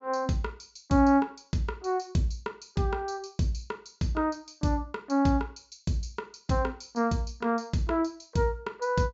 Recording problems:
treble cut off; nothing above 8 kHz

